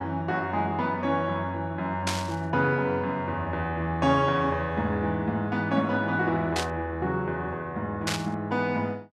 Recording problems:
static burst; at 2 s, at 6.5 s and at 8 s; peak +3 dB vs average level

